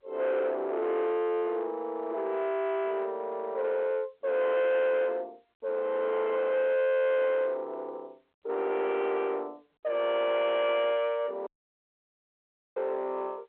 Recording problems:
phone line; 340 Hz to 2.9 kHz, G.711
distorted audio; soft clipping, signal-to-distortion ratio 10 dB
audio cutting out; at 11 s for 1.5 s

